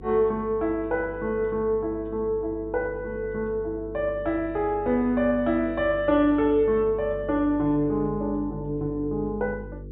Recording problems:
treble missing; nothing above 4 kHz
hum; 50 Hz, harmonics up to 500 Hz, SNR 15 dB

